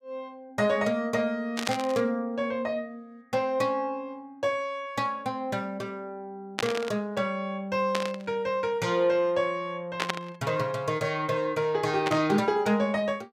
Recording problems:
static burst; 5 times, first at 1.5 s; peak +4 dB vs average level

